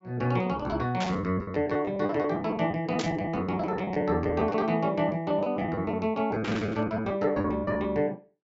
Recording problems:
low-pass filter; nothing above 7.4 kHz
lost packets; 13% of the sound replaced, filled with the last packet
burst of static; at 1 s, at 3 s and at 6.5 s; peak -2 dB vs average level

